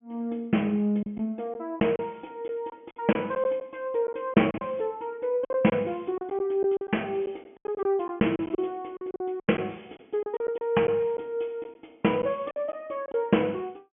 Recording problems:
treble cut off; nothing above 3.1 kHz
lost packets; 9% of the sound replaced, filled with silence

